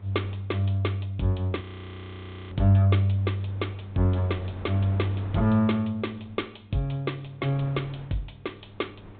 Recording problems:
low-pass filter; nothing above 4 kHz
hum; 50 Hz, harmonics up to 700 Hz, SNR 25 dB
wind noise; below 710 Hz, SNR 21 dB
frozen audio; at 1.5 s for 1 s

